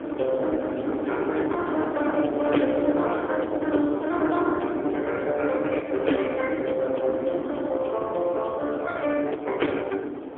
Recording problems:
telephone audio; 220 Hz to 3.5 kHz, AMR-NB, then MP3
distorted audio; soft clipping, signal-to-distortion ratio 12 dB
wind noise; below 590 Hz, SNR 7 dB

